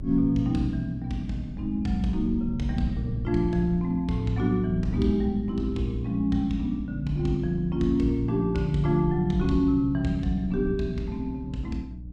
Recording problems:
hum; 60 Hz, harmonics up to 300 Hz, SNR 13 dB
rumble; below 110 Hz, SNR 16 dB

